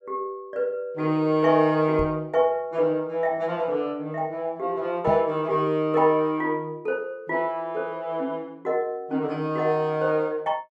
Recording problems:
knock on the microphone; at 2 s and at 5 s; peak -1 dB vs average level

